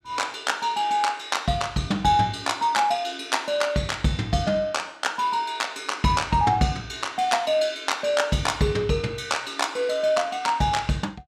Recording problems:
none

